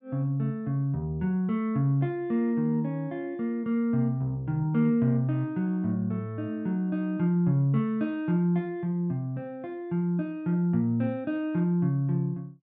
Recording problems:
none

